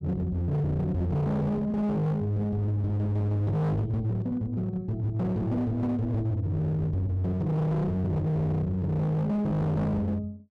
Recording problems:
distorted audio; hard clipping, signal-to-distortion ratio 7 dB

